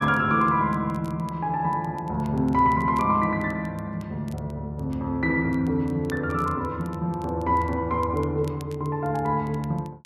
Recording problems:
crackling; vinyl, SNR 28 dB

